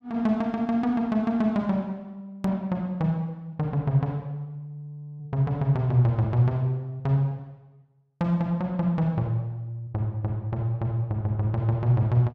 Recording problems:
edit click; at 2.5 s

